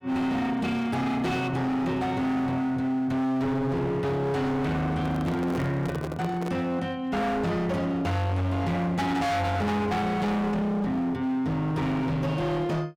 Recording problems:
distorted audio; hard clipping, signal-to-distortion ratio 6 dB
handling noise; from 5 to 6.5 s; peak -2 dB vs average level

